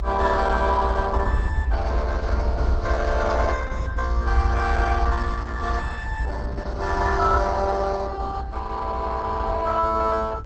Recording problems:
lossy compression; Opus, log-spectral distance 3 dB, nothing above 8 kHz
low-frequency rumble; below 74 Hz, strongest tone 58 Hz, SNR 5 dB

